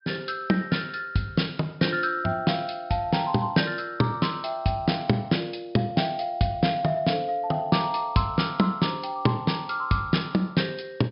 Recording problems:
treble cut off; nothing above 5.5 kHz

